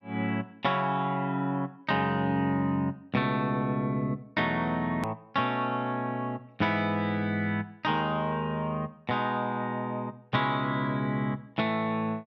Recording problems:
hard cut with a click; at 5 s

